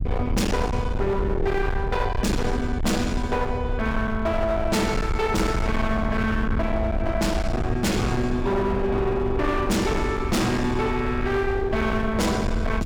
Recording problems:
distortion; hard clipping, signal-to-distortion ratio 7 dB
rumble; below 120 Hz, SNR 5 dB

